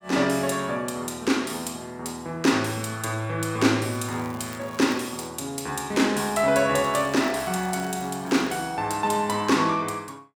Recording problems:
crackling; from 4 to 5.5 s and from 7 to 8.5 s; loose cable, SNR 22 dB

